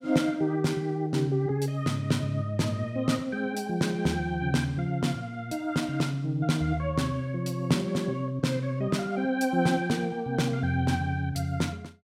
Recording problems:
none

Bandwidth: 16 kHz